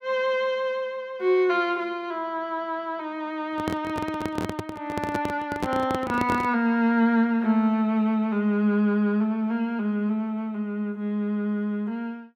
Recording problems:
handling noise; from 3.5 to 6.5 s; peak +1 dB vs average level

